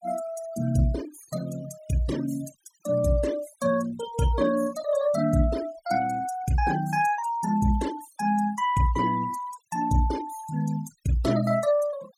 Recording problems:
denoising artefacts; signal-to-artefact ratio 17 dB

